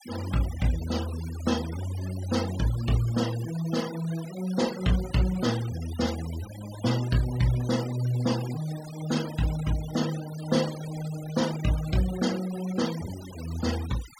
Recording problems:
noise reduction artefacts; signal-to-artefact ratio 14 dB

